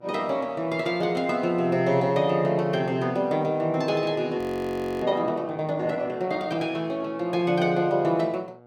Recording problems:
electrical hum; 60 Hz, harmonics up to 1.6 kHz, SNR 27 dB
frozen audio; at 4.5 s for 0.5 s

